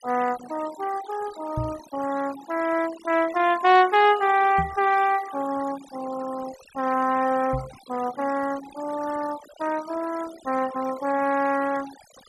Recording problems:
noise reduction artefacts; signal-to-artefact ratio 17 dB
microphone bump; at 1.5 s, at 4.5 s and at 7.5 s; peak -2 dB vs average level

